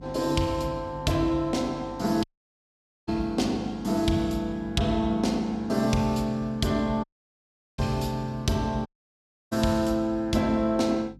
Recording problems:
hum; 50 Hz, harmonics up to 300 Hz, SNR 19 dB
dropout; at 2 s for 1 s, at 7 s for 0.5 s and at 9 s for 0.5 s

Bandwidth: 15 kHz